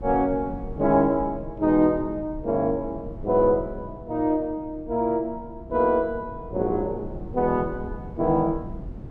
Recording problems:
wind on the microphone; below 180 Hz, SNR 15 dB

